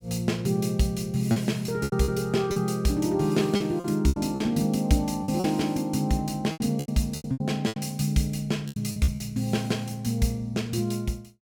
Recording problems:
packet loss; 10% of the sound replaced, filled with repeated pitch periods

